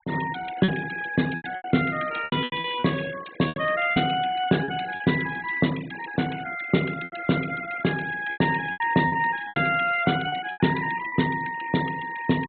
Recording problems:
low-pass filter; nothing above 4 kHz
noise reduction artefacts; signal-to-artefact ratio 16 dB
lost packets; 9% of the sound replaced, filled with repeated pitch periods

